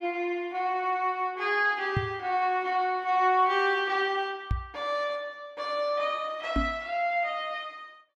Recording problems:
microphone thump; at 2 s, at 4.5 s and at 6.5 s; peak +3 dB vs average level

